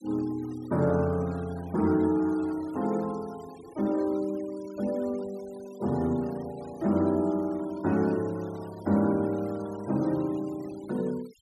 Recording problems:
denoising artefacts; signal-to-artefact ratio 23 dB

